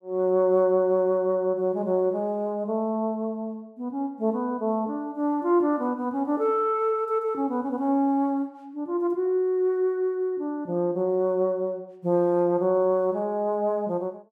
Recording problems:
none

